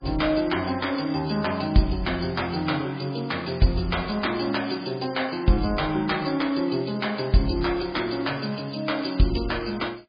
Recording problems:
codec artefacts; MP3, log-spectral distance 7 dB, nothing above 4.8 kHz

